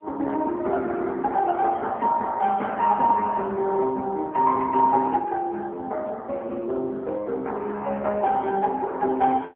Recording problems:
phone line; 240 Hz to 3.1 kHz, AMR-NB

